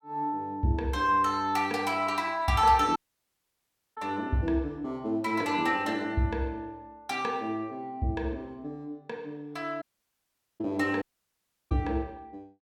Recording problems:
dropout; at 3 s for 1 s, at 10 s for 1 s and at 11 s for 0.5 s

